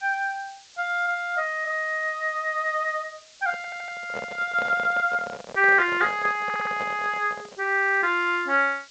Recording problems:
codec artefacts; G.722, log-spectral distance 5 dB, nothing above 8 kHz
background hiss; slope +3 dB per octave, SNR 25 dB
handling noise; from 3.5 to 7.5 s; peak -7 dB vs average level
stutter; at 3.5 s and at 6.5 s

